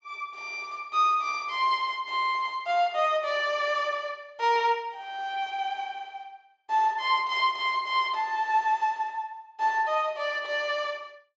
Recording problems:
low-pass filter; nothing above 8 kHz

